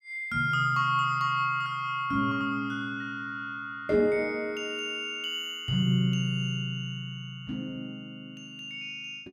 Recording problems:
none

